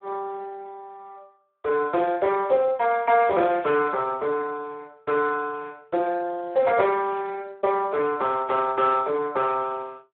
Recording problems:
telephone audio; 320 Hz to 2 kHz, Speex

